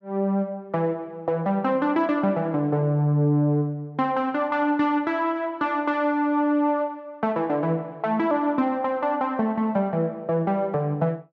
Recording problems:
none

